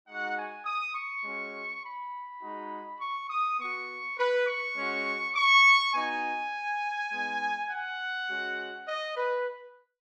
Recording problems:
none

